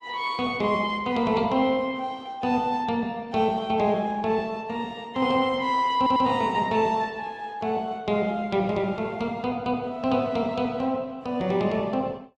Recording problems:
lossy codec; Opus, log-spectral distance 2 dB
audio stuttering; at 6 s

